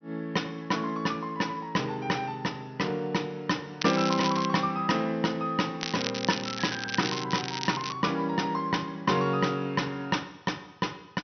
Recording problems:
treble cut off; nothing above 6.1 kHz
crackling; at 4 s and from 6 to 8 s; loose cable, SNR 6 dB

